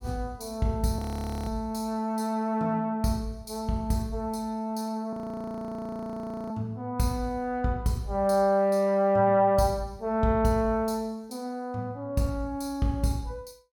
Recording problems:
frozen audio; at 1 s and at 5 s for 1.5 s

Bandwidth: 17.5 kHz